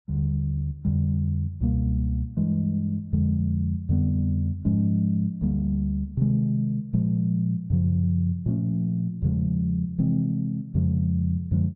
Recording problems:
none

